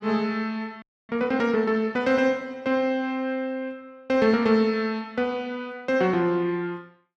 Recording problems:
frozen audio; at 1 s

